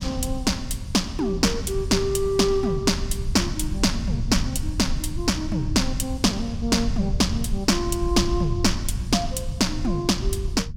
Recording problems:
rumble; below 94 Hz, SNR 7 dB

